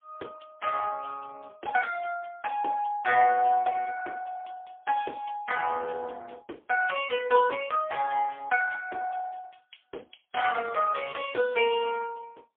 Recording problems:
phone line; 300 Hz to 3 kHz, AMR-NB, then MP3

